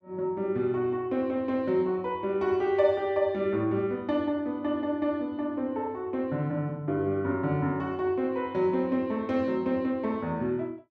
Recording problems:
none

